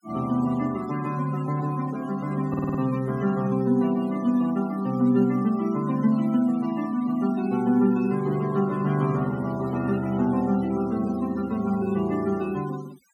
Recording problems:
denoising artefacts; signal-to-artefact ratio 19 dB
audio stuttering; at 2.5 s

